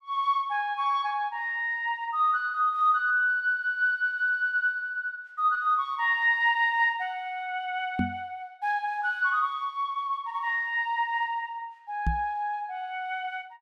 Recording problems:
knock on the microphone; at 8 s and at 12 s; peak +3 dB vs average level

